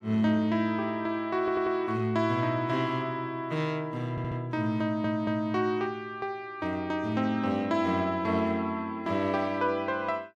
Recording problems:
stutter; at 1.5 s, at 4 s and at 5 s

